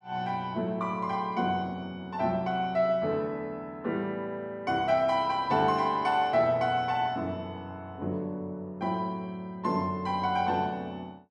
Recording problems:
none

